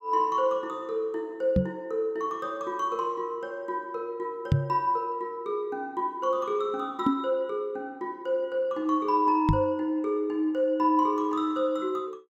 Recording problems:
microphone bump; 4 times, first at 1.5 s; peak +8 dB vs average level

